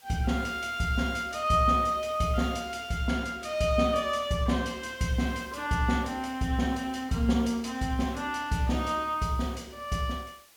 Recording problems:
background hiss; slope 0 dB per octave, SNR 26 dB

